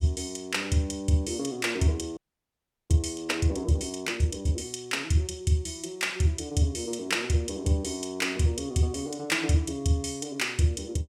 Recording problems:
audio freezing; at 2 s for 0.5 s

